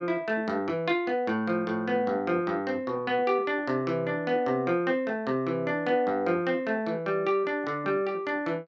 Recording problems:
none

